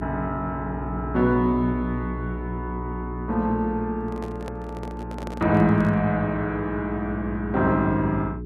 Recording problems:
hum; 60 Hz, harmonics up to 420 Hz, SNR 9 dB
microphone handling noise; from 4 to 6 s; peak -7 dB vs average level

